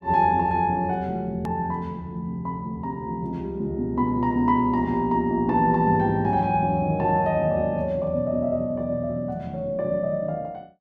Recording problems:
click at an edit; at 1.5 s

